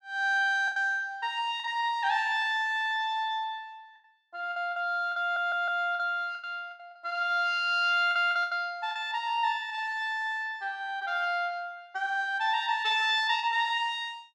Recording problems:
packet loss; 5% of the sound replaced, filled with the last packet
audio stuttering; at 5 s

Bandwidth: 12.5 kHz